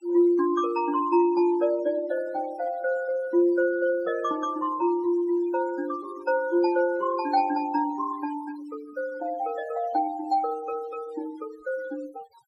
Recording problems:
denoising artefacts; signal-to-artefact ratio 19 dB

